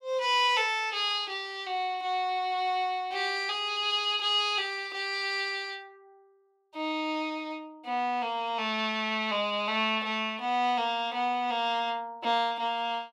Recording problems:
none

